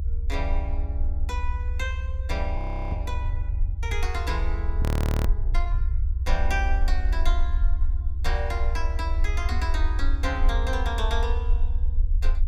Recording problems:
rumble; below 62 Hz, strongest tone 24 Hz, SNR -6 dB
audio freezing; at 2.5 s and at 5 s
knock on the microphone; at 9.5 s; peak 0 dB vs average level

